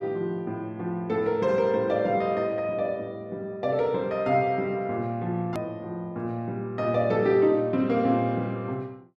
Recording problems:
click at an edit; at 5.5 s

